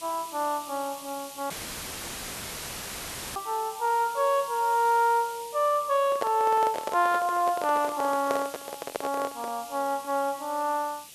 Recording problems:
background hiss; SNR 16 dB
dropout; at 1.5 s for 2 s; filled with static
handling noise; from 6 to 9.5 s; peak +1 dB vs average level

